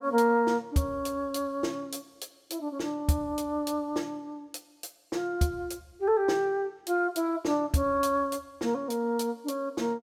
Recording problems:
none

